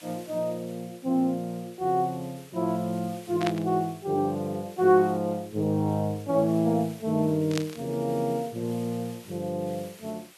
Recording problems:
background hiss; SNR 22 dB
burst of static; at 3.5 s and at 7.5 s; peak 0 dB vs average level

